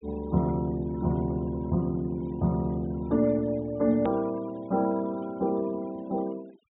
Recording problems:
treble cut off; nothing above 4 kHz
noise reduction artefacts; signal-to-artefact ratio 25 dB
click at an edit; at 4 s

